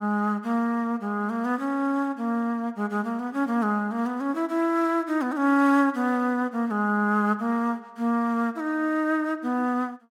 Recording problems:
none

